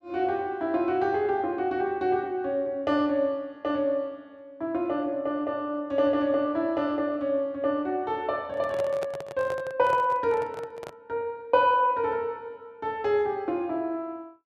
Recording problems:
microphone handling noise; from 8.5 to 11 s; peak -4 dB vs average level

